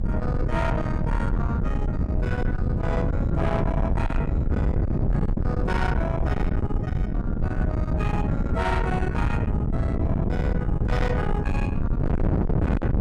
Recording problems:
distortion; soft clipping, signal-to-distortion ratio 7 dB
hum; 60 Hz, harmonics up to 540 Hz, SNR 21 dB
wind on the microphone; below 200 Hz, SNR -5 dB

